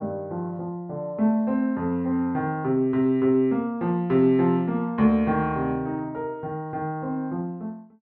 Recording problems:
none

